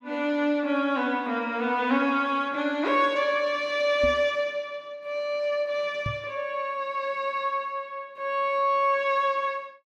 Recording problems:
microphone bump; at 4 s and at 6 s; peak -2 dB vs average level

